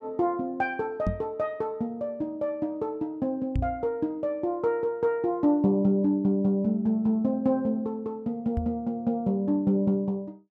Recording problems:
microphone bump; at 1 s, at 3.5 s and at 8.5 s; peak +2 dB vs average level

